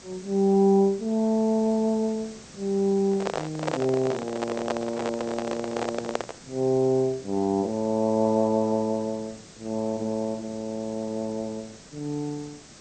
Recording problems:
codec artefacts; MP2, log-spectral distance 6 dB
background hiss; SNR 19 dB
microphone handling noise; from 3 to 6.5 s; peak +3 dB vs average level

